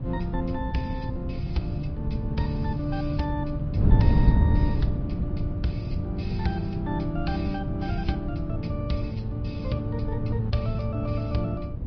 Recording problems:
treble missing; nothing above 5.2 kHz
codec artefacts; MP3, log-spectral distance 2 dB
wind on the microphone; below 140 Hz, SNR -2 dB

